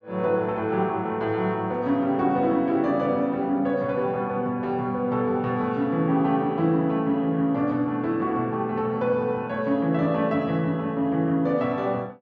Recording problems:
none

